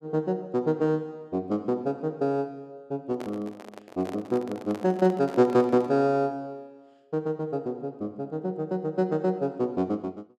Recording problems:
handling noise; from 3 to 6 s; peak -8 dB vs average level

